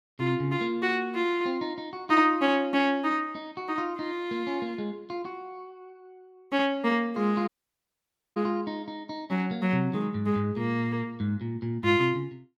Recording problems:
dropout; at 7.5 s for 1 s

